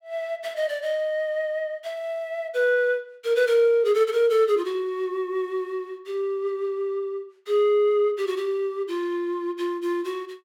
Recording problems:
none

